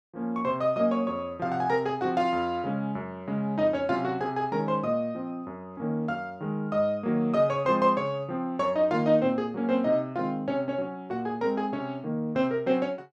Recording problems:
none

